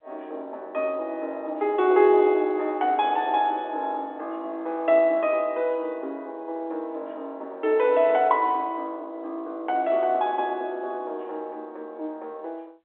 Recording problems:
phone line; 260 Hz to 3.8 kHz, G.711

